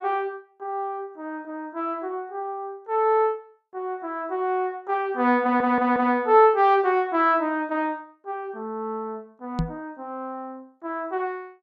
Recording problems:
stutter; at 5.5 s
microphone bump; at 9.5 s; peak +2 dB vs average level

